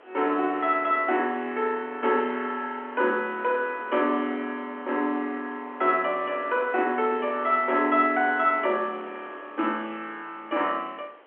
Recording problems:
phone line; 260 Hz to 3.3 kHz, G.711
wind on the microphone; below 1.8 kHz, SNR 23 dB

